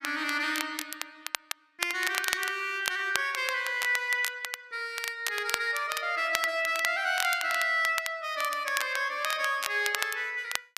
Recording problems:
crackle; vinyl, SNR 7 dB

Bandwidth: 14.5 kHz